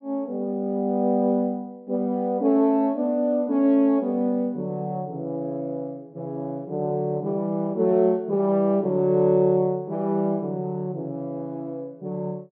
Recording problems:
none

